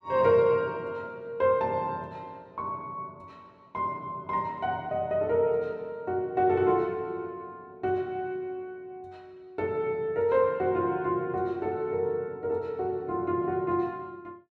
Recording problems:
none

